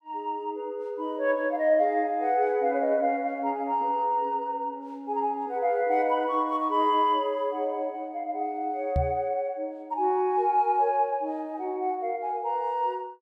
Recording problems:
microphone thump; at 9 s; peak +3 dB vs average level

